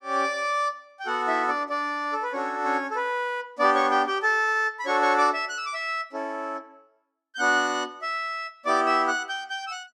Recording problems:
none

